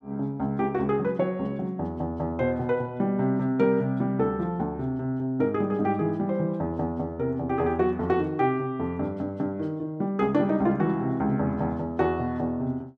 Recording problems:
none

